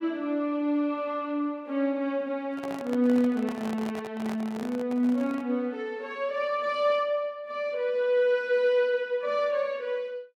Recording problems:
handling noise; from 2.5 to 5.5 s; peak -7 dB vs average level

